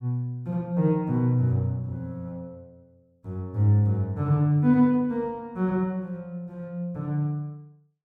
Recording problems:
none

